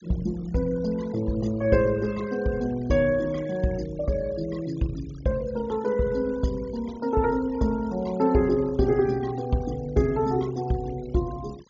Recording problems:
treble missing; nothing above 7.1 kHz
noise reduction artefacts; signal-to-artefact ratio 22 dB

